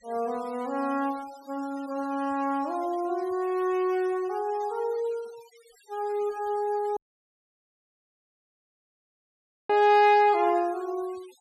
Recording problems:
denoising artefacts; signal-to-artefact ratio 24 dB
dropout; at 7 s for 2.5 s

